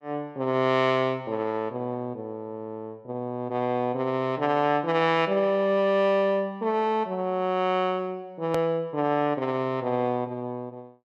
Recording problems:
click at an edit; at 8.5 s

